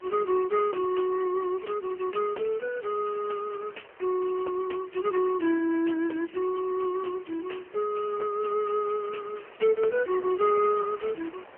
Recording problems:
phone line; 260 Hz to 3 kHz, AMR-NB
wind on the microphone; below 1.9 kHz, SNR 24 dB

